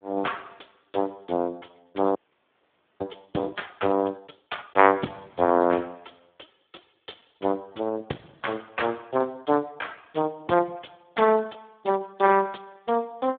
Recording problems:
phone line; 190 Hz to 3.5 kHz, Speex
audio freezing; at 2 s for 1 s

